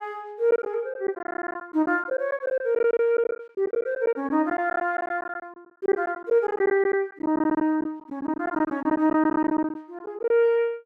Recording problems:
lost packets; 14% of the sound replaced, filled with silence

